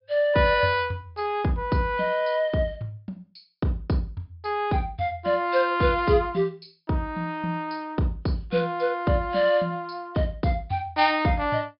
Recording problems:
low-pass filter; nothing above 5.5 kHz

